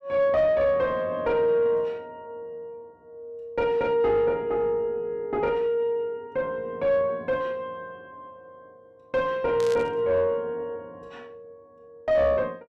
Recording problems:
distortion; soft clipping, signal-to-distortion ratio 9 dB
static burst; at 9.5 s; peak -10 dB vs average level

